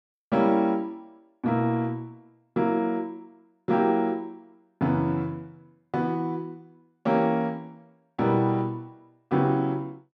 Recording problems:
none

